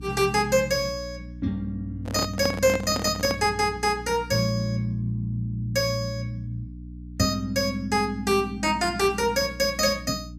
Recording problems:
hum; 60 Hz, harmonics up to 300 Hz, SNR 15 dB
handling noise; from 2 to 3.5 s; peak 0 dB vs average level

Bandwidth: 14.5 kHz